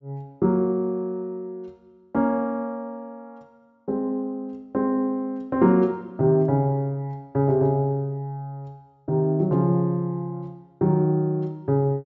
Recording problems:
treble missing; nothing above 8 kHz

